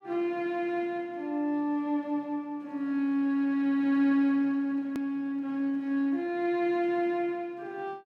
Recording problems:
hard cut with a click; at 5 s

